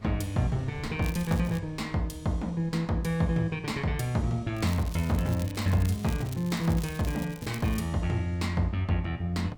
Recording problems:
wind noise; below 160 Hz, SNR 20 dB
crackling; at 1 s and from 4.5 to 8 s; loose cable, SNR 17 dB

